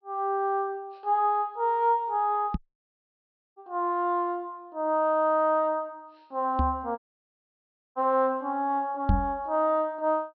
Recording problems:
low-pass filter; nothing above 5.5 kHz
microphone thump; at 2.5 s, at 6.5 s and at 9 s; peak +6 dB vs average level
dropout; at 2.5 s for 1 s and at 7 s for 1 s

